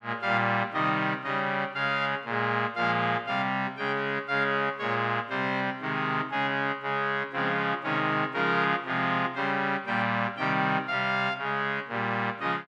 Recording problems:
none

